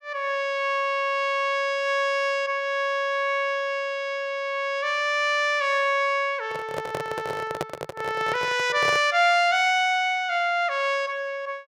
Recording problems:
handling noise; from 6.5 to 9 s; peak -1 dB vs average level

